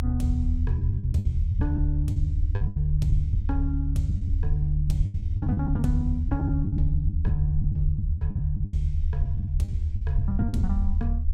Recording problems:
rumble; below 76 Hz, SNR -2 dB
packet loss; 12% of the sound replaced, filled with the last packet

